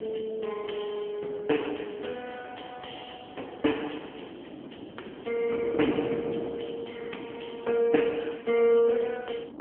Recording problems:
phone line; 220 Hz to 3.3 kHz, AMR-NB
wind on the microphone; below 480 Hz, SNR 11 dB

